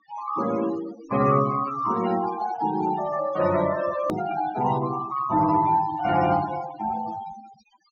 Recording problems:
low-pass filter; nothing above 6.6 kHz
denoising artefacts; signal-to-artefact ratio 13 dB
edit click; at 4 s

